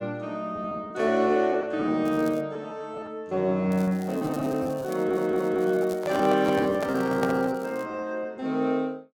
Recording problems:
packet loss; 13% of the sound replaced, filled with repeated pitch periods
crackle; at 2 s and from 3.5 to 8 s; loose cable, SNR 24 dB
audio stuttering; at 5 s
microphone handling noise; from 6 to 7.5 s; peak 0 dB vs average level

